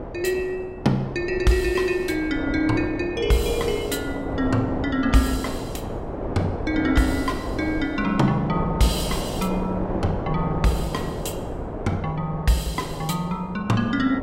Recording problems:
wind noise; below 610 Hz, SNR 6 dB

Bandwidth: 16 kHz